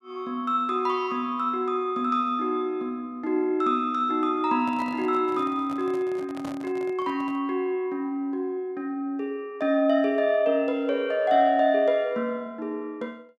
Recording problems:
handling noise; from 4.5 to 7.5 s; peak -9 dB vs average level

